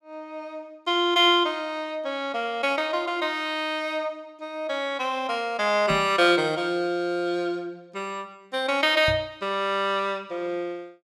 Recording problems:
microphone thump; at 6 s and at 9 s; peak -2 dB vs average level

